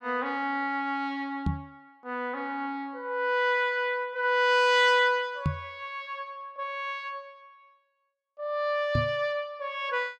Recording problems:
microphone thump; at 1.5 s, at 5.5 s and at 9 s; peak +4 dB vs average level

